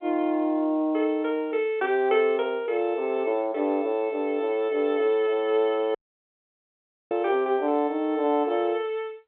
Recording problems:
phone line; 260 Hz to 3.9 kHz, G.711
audio cutting out; at 6 s for 1 s

